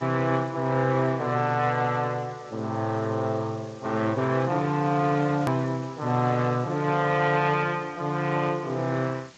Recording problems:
lossy compression; Speex, log-spectral distance 5 dB, nothing above 13.1 kHz
hiss; slope -1 dB per octave, SNR 25 dB
edit click; at 5.5 s

